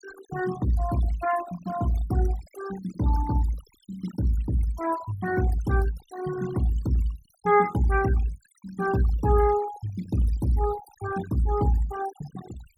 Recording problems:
denoising artefacts; signal-to-artefact ratio 15 dB

